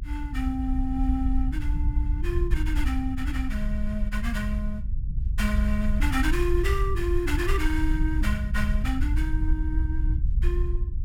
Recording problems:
low-frequency rumble; below 60 Hz, SNR -3 dB

